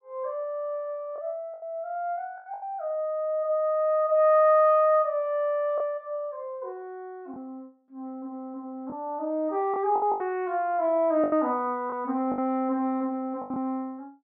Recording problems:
packet loss; 5% of the sound replaced, filled with the last packet

